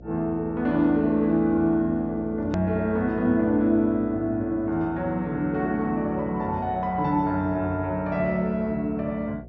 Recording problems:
low-pass filter; nothing above 7.3 kHz
electrical hum; 60 Hz, harmonics up to 720 Hz, SNR 19 dB
edit click; at 2.5 s

